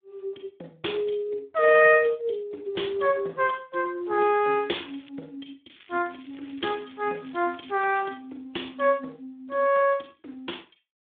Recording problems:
telephone audio; 280 Hz to 3.5 kHz, Speex
crackling; at 4.5 s and from 5.5 to 8 s; loose cable, SNR 28 dB

